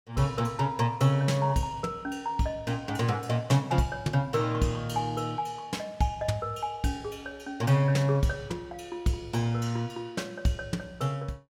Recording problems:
none

